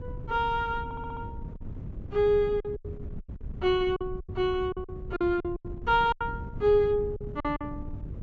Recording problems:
treble cut off; nothing above 7.5 kHz
wind on the microphone; below 150 Hz, SNR 12 dB
lost packets; 11% of the sound replaced, filled with silence
stutter; at 1 s

